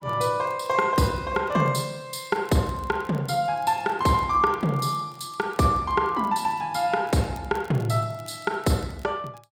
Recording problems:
crackling; vinyl, SNR 29 dB

